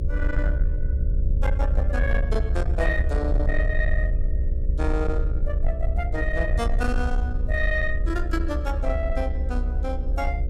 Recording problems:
distorted audio; soft clipping, signal-to-distortion ratio 12 dB
hum; 60 Hz, harmonics up to 600 Hz, SNR 12 dB
low-frequency rumble; below 66 Hz, SNR -3 dB

